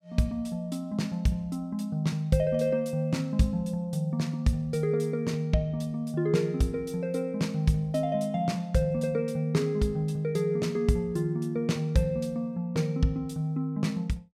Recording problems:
none

